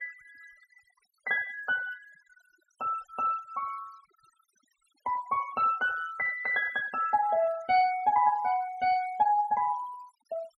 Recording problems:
noise reduction artefacts; signal-to-artefact ratio 20 dB

